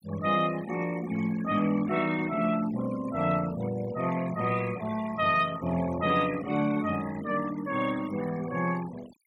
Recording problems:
denoising artefacts; signal-to-artefact ratio 16 dB

